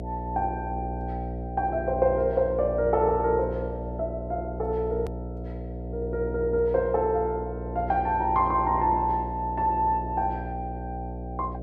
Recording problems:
electrical hum; 60 Hz, harmonics up to 720 Hz, SNR 8 dB
click at an edit; at 5 s

